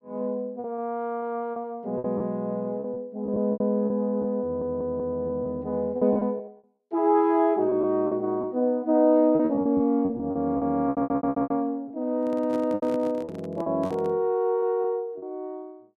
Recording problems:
lost packets; 10% of the sound replaced, filled with repeated pitch periods
stutter; at 4.5 s and at 11 s
handling noise; from 12 to 14 s; peak -8 dB vs average level

